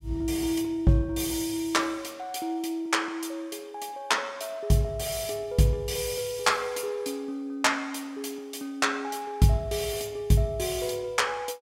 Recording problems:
none

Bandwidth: 16.5 kHz